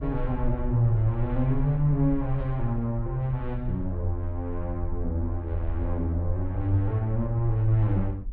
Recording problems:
rumble; below 48 Hz, strongest tone 22 Hz, SNR 10 dB

